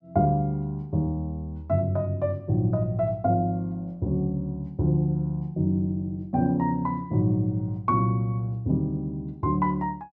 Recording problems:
none

